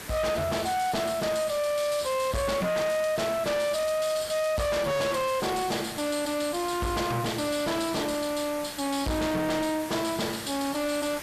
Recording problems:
distorted audio; hard clipping, uneven, signal-to-distortion ratio 7 dB
background hiss; SNR 12 dB

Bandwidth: 14 kHz